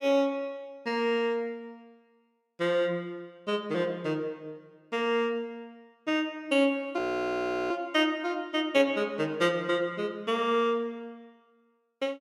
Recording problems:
audio freezing; at 7 s for 0.5 s

